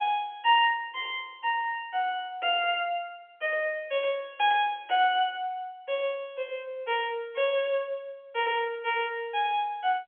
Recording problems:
phone line; 300 Hz to 3.4 kHz, G.711

